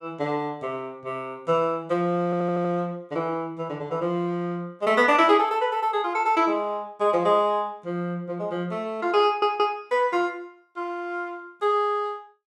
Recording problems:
audio stuttering; at 2.5 s and at 9.5 s

